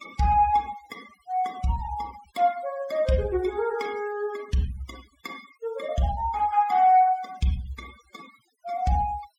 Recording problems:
denoising artefacts; signal-to-artefact ratio 22 dB

